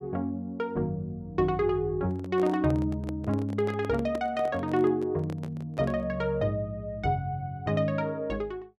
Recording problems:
microphone handling noise; from 2 to 6 s; peak -4 dB vs average level

